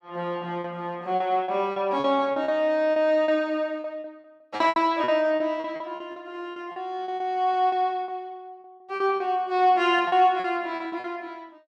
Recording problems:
packet loss; 13% of the sound replaced, filled with repeated pitch periods

